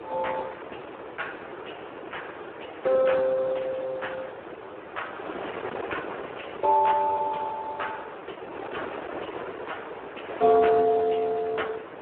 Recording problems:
telephone audio; 300 Hz to 3.1 kHz, Speex
wind noise; below 1.2 kHz, SNR 12 dB

